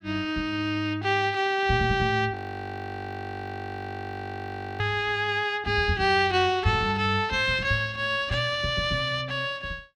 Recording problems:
frozen audio; at 2.5 s for 2.5 s

